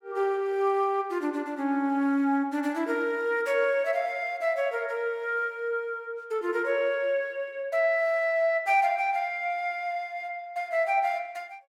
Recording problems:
none

